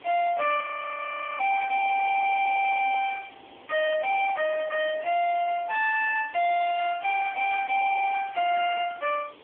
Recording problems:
phone line; 280 Hz to 2.8 kHz, AMR-NB
distorted audio; soft clipping, signal-to-distortion ratio 9 dB
background hiss; SNR 25 dB
audio freezing; at 0.5 s for 1 s
burst of static; at 7.5 s; peak -13 dB vs average level

